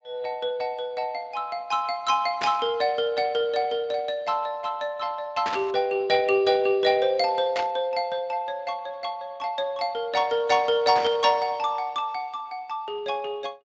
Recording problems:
lossy codec; Speex, log-spectral distance 2 dB
burst of static; 4 times, first at 2.5 s; peak -1 dB vs average level

